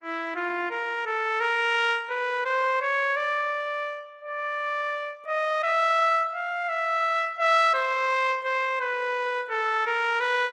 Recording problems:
lossy codec; Opus, log-spectral distance 3 dB

